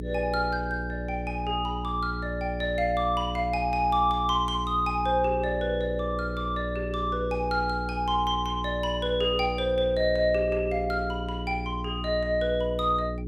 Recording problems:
hum; 60 Hz, harmonics up to 420 Hz, SNR 7 dB

